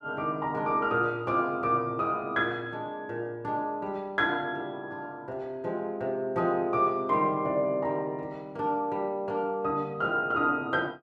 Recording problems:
none

